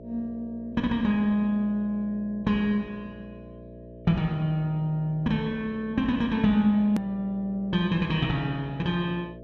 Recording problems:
mains hum; 60 Hz, harmonics up to 660 Hz, SNR 18 dB
click at an edit; at 7 s

